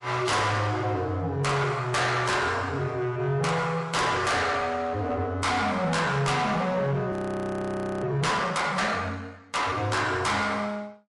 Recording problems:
lossy compression; MP3, log-spectral distance 2 dB, nothing above 11 kHz
distorted audio; soft clipping, signal-to-distortion ratio 6 dB
audio freezing; at 7 s for 1 s

